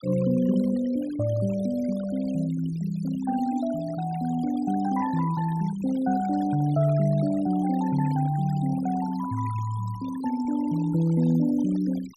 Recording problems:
denoising artefacts; signal-to-artefact ratio 19 dB

